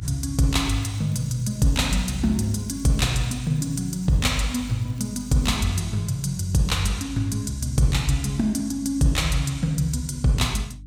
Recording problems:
mains hum; 50 Hz, harmonics up to 300 Hz, SNR 19 dB
crackling; from 0.5 to 5.5 s; loose cable, SNR 30 dB

